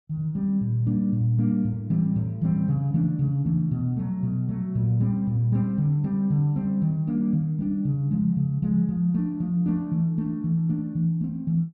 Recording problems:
none

